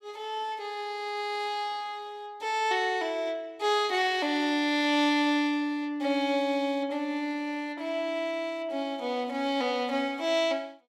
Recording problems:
none

